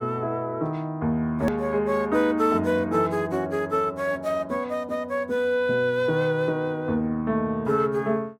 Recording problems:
edit click; at 1.5 s

